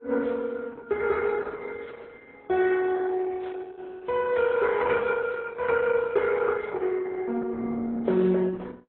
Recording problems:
lossy codec; Opus, then AAC, log-spectral distance 3 dB

